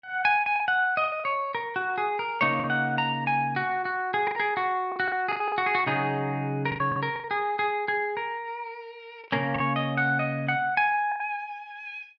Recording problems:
lost packets; 7% of the sound replaced, filled with the last packet

